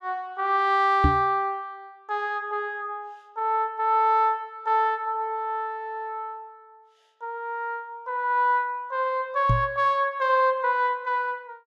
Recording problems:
knock on the microphone; at 1 s and at 9.5 s; peak +6 dB vs average level

